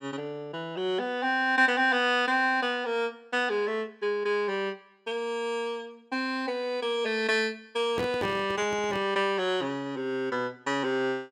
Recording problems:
microphone handling noise; from 8 to 9 s; peak -3 dB vs average level

